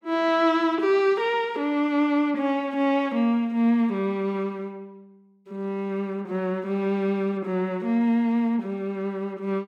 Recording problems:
none

